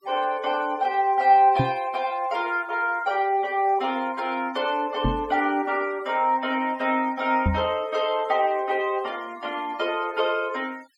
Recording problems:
noise reduction artefacts; signal-to-artefact ratio 25 dB
knock on the microphone; at 1.5 s, at 5 s and at 7.5 s; peak +4 dB vs average level

